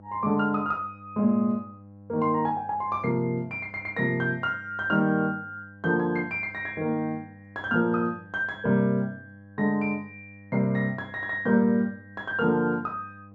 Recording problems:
hum; 50 Hz, harmonics up to 1 kHz, SNR 22 dB

